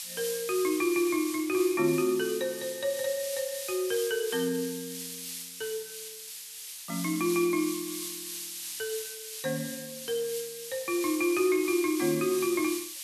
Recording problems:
background hiss; slope +8 dB per octave, SNR 7 dB

